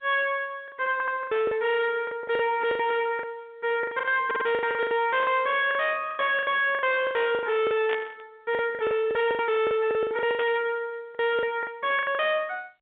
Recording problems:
telephone audio; 220 Hz to 3.7 kHz, G.711
distorted audio; hard clipping, signal-to-distortion ratio 7 dB
packet loss; 17% of the sound replaced, filled with the last packet
audio stuttering; at 1 s and at 4.5 s
burst of static; at 8 s and at 10 s; peak -4 dB vs average level

